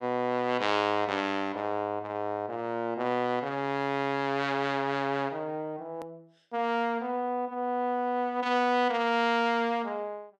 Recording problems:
click at an edit; at 6 s

